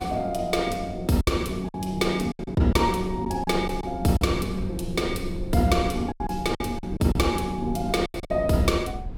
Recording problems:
rumble; below 92 Hz, SNR 13 dB
packet loss; 8% of the sound replaced, filled with silence

